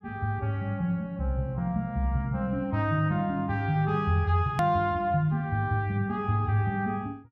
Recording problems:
click at an edit; at 4.5 s

